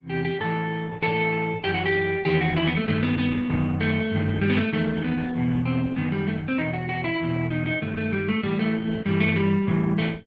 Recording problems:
codec artefacts; Opus, log-spectral distance 3 dB

